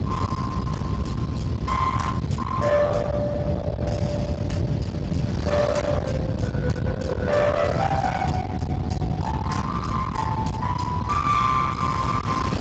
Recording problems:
lossy codec; Speex, log-spectral distance 3 dB, nothing above 7.3 kHz
distortion; hard clipping, signal-to-distortion ratio 7 dB
rumble; below 610 Hz, SNR 2 dB
wind noise; below 1 kHz, SNR 12 dB

